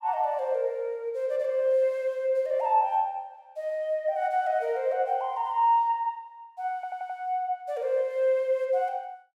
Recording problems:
audio stuttering; at 7 s

